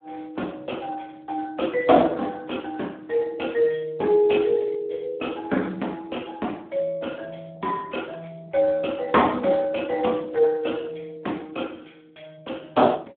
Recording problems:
phone line; 220 Hz to 3.4 kHz, Speex

